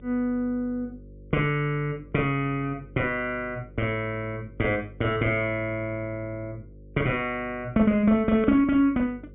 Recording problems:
low-pass filter; nothing above 3.6 kHz
hum; 50 Hz, harmonics up to 550 Hz, SNR 22 dB

